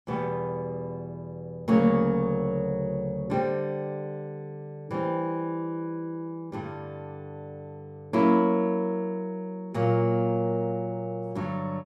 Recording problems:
none

